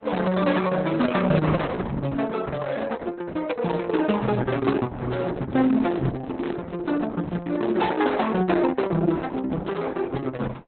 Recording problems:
lossy codec; Vorbis, then Opus, log-spectral distance 4 dB, nothing above 4 kHz
handling noise; from 5 to 8 s; peak -6 dB vs average level

